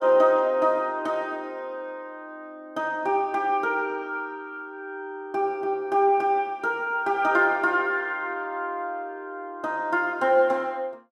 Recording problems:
none

